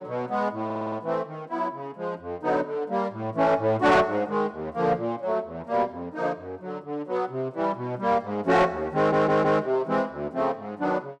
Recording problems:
distorted audio; soft clipping, signal-to-distortion ratio 12 dB
audio stuttering; at 0.5 s and at 9 s

